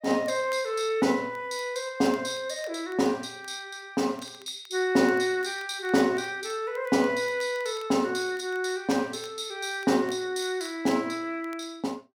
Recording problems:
crackling; vinyl, SNR 27 dB

